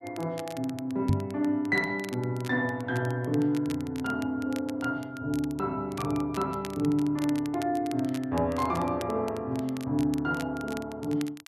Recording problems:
crackle; vinyl, SNR 18 dB
microphone bump; at 1 s; peak +7 dB vs average level

